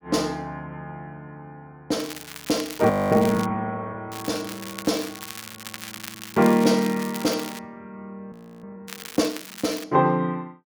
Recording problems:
crackling; from 2 to 3.5 s, from 4 to 7.5 s and at 9 s; loose cable, SNR 13 dB
frozen audio; at 3 s and at 8.5 s

